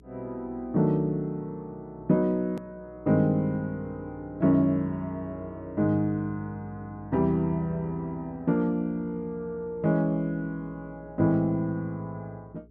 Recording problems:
hum; 60 Hz, harmonics up to 420 Hz, SNR 24 dB
edit click; at 2.5 s

